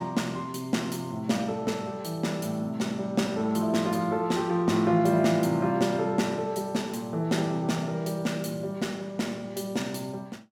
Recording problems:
none

